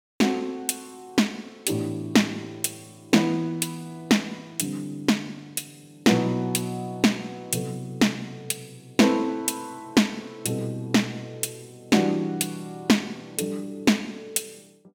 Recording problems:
none

